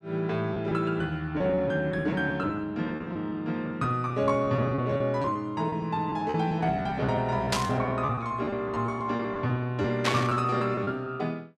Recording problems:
packet loss; 14% of the sound replaced, filled with repeated pitch periods
static burst; at 7.5 s and at 10 s; peak +5 dB vs average level

